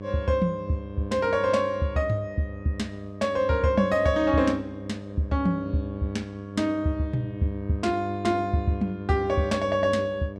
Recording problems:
hum; 50 Hz, harmonics up to 1.1 kHz, SNR 11 dB

